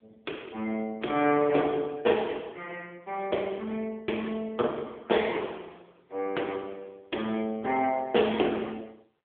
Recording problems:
telephone audio; 260 Hz to 3.5 kHz, AMR-NB

